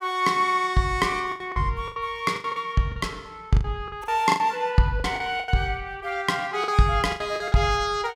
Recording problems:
lost packets; 12% of the sound replaced, filled with the last packet

